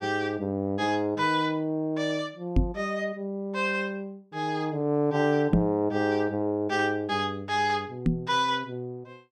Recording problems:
knock on the microphone; at 2.5 s, at 5.5 s and at 8 s; peak +9 dB vs average level

